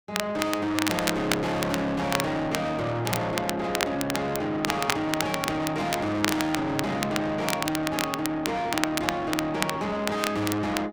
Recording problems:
distorted audio; soft clipping, signal-to-distortion ratio 6 dB
crackle; vinyl, SNR 4 dB

